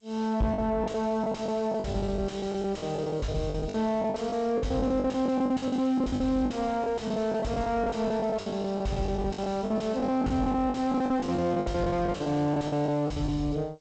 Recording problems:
lossy codec; G.722, log-spectral distance 2 dB, nothing above 8 kHz
distorted audio; soft clipping, signal-to-distortion ratio 6 dB
lost packets; 17% of the sound replaced, filled with the last packet

